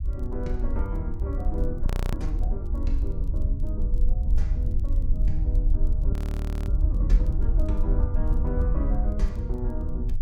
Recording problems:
low-frequency rumble; below 60 Hz, SNR -9 dB
crackling; vinyl, SNR 29 dB
frozen audio; at 2 s and at 6 s for 0.5 s

